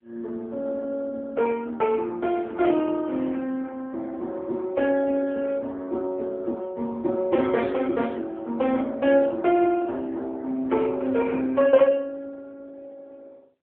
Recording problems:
phone line; 240 Hz to 2.8 kHz, AMR-NB

